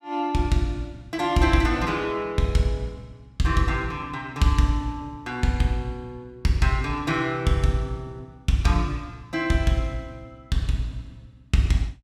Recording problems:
none

